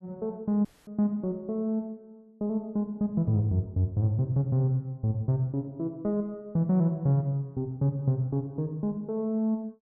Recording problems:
dropout; at 0.5 s

